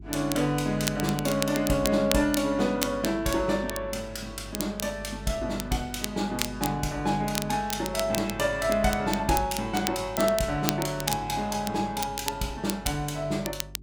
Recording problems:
electrical hum; 50 Hz, harmonics up to 400 Hz, SNR 16 dB
crackling; vinyl, SNR 8 dB

